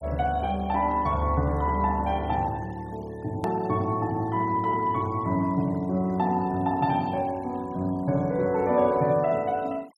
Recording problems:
denoising artefacts; signal-to-artefact ratio 27 dB
hard cut with a click; at 3.5 s

